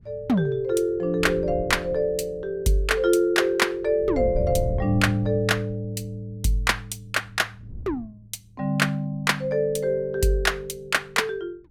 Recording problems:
wind on the microphone; below 130 Hz, SNR 10 dB

